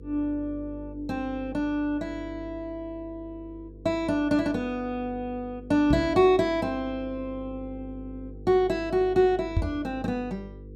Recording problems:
hum; 50 Hz, harmonics up to 500 Hz, SNR 17 dB
microphone bump; at 6 s and at 9.5 s; peak +5 dB vs average level

